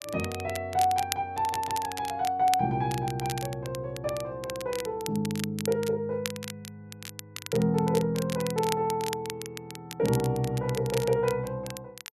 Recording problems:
crackling; vinyl, SNR 11 dB

